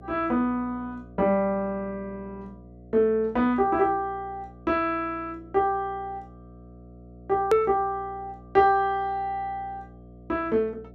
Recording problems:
hum; 60 Hz, harmonics up to 720 Hz, SNR 21 dB
edit click; at 7.5 s

